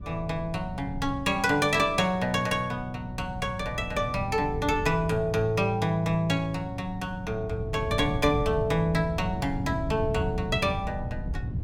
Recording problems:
wind noise; below 150 Hz, SNR 9 dB

